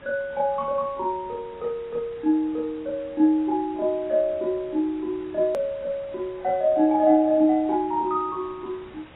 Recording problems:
lossy compression; AAC, log-spectral distance 3 dB, nothing above 13.1 kHz
background hiss; SNR 24 dB
click at an edit; at 5.5 s

